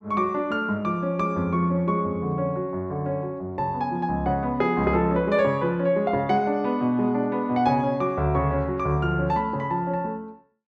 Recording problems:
none

